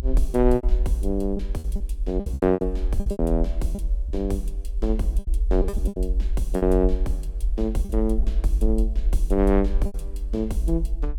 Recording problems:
rumble; below 52 Hz, strongest tone 40 Hz, SNR 1 dB
lost packets; 9% of the sound replaced, filled with repeated pitch periods

